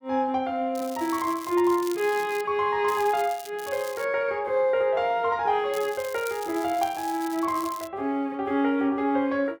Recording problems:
crackle; 4 times, first at 1 s; loose cable, SNR 17 dB

